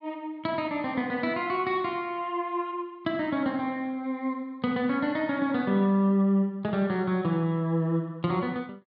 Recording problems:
none

